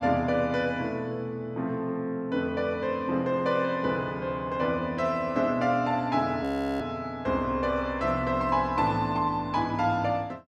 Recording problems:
audio freezing; at 6.5 s

